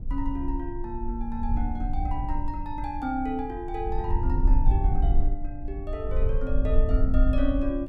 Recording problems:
low-frequency rumble; below 54 Hz, SNR -4 dB

